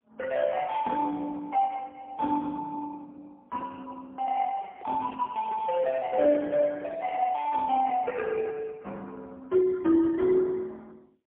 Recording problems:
phone line; 240 Hz to 2.4 kHz, AMR-NB, then MP3
microphone handling noise; from 4.5 to 7 s; peak -13 dB vs average level

